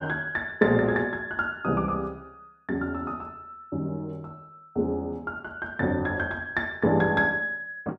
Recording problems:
none

